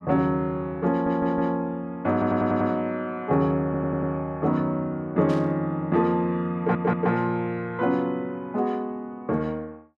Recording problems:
stutter; 4 times, first at 1 s
burst of static; at 5.5 s; peak -13 dB vs average level

